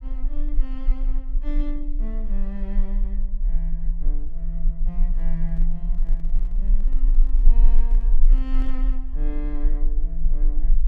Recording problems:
low-frequency rumble; below 30 Hz, strongest tone 18 Hz, SNR -12 dB
microphone handling noise; from 5 to 9 s; peak -5 dB vs average level

